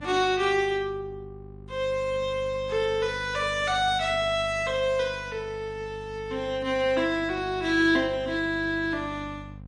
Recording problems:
codec artefacts; MP3, log-spectral distance 2 dB, nothing above 9.5 kHz
hum; 50 Hz, harmonics up to 800 Hz, SNR 17 dB

